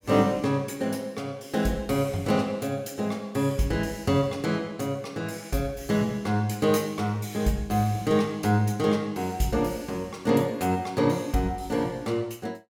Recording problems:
none

